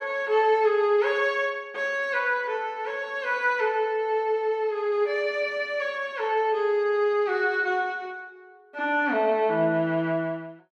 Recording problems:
none

